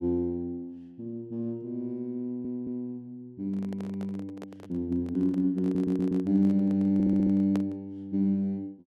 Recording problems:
stutter; at 2 s, at 5.5 s and at 7 s
handling noise; from 3.5 to 8 s; peak -4 dB vs average level

